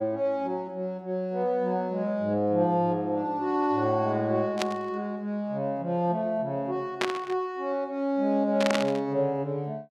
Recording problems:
burst of static; at 4.5 s, at 7 s and at 8.5 s; peak +3 dB vs average level

